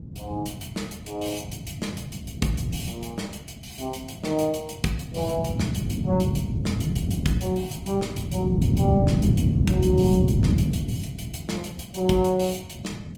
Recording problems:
lossy codec; Opus, log-spectral distance 4 dB, nothing above 18.5 kHz
wind on the microphone; below 210 Hz, SNR -3 dB

